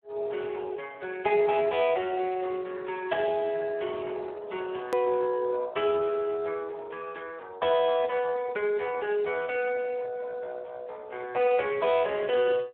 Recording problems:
phone line; 340 Hz to 3.5 kHz, Speex
click at an edit; at 5 s

